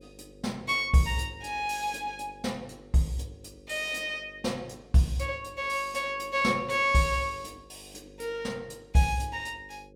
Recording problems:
electrical hum; 50 Hz, harmonics up to 550 Hz, SNR 24 dB

